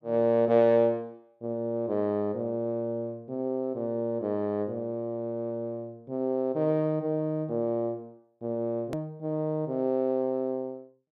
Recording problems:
click at an edit; at 9 s

